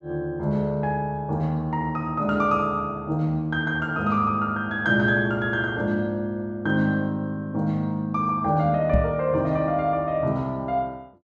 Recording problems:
knock on the microphone; at 9 s; peak +5 dB vs average level

